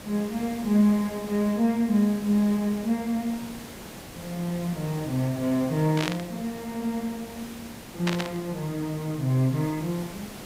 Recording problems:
hiss; slope -4 dB per octave, SNR 14 dB
static burst; at 6 s and at 8 s; peak +1 dB vs average level

